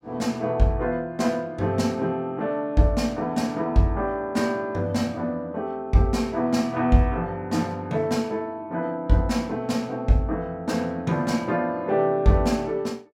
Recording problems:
none

